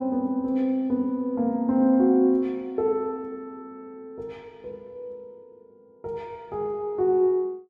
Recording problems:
none

